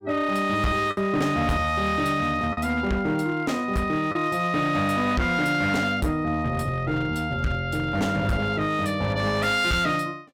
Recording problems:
distorted audio; hard clipping, signal-to-distortion ratio 12 dB
packet loss; 1.3% of the sound replaced, filled with the last packet

